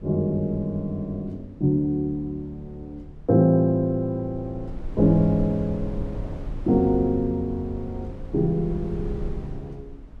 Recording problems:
wind noise; below 100 Hz, SNR 13 dB

